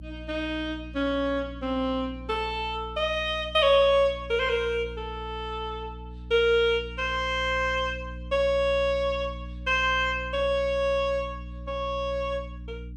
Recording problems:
hum; 60 Hz, harmonics up to 300 Hz, SNR 14 dB

